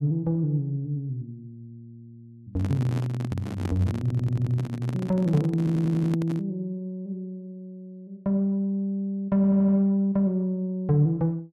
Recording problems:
handling noise; from 2.5 to 6.5 s; peak -3 dB vs average level
audio stuttering; at 4 s, at 5.5 s and at 9.5 s

